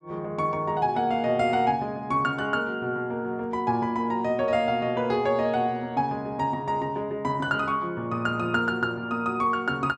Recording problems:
none

